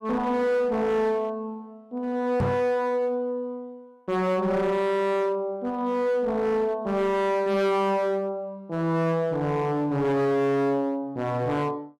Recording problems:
distorted audio; hard clipping, uneven, signal-to-distortion ratio 7 dB
knock on the microphone; at 2.5 s; peak +4 dB vs average level

